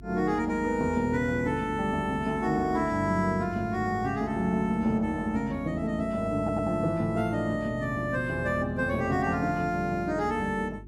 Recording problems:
hum; 50 Hz, harmonics up to 400 Hz, SNR 19 dB
audio stuttering; at 6.5 s

